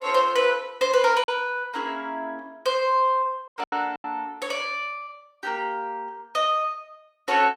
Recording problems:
lost packets; 3% of the sound replaced, filled with silence

